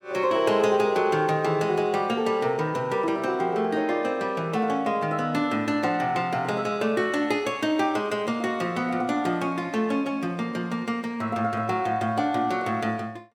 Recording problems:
none

